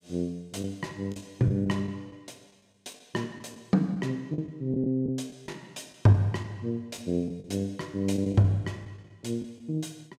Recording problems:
packet loss; 8% of the sound replaced, filled with the last packet

